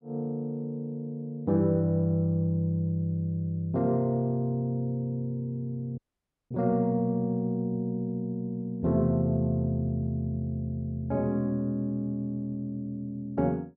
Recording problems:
audio cutting out; at 6 s for 0.5 s

